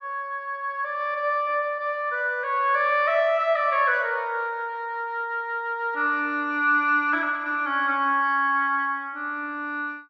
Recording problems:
none

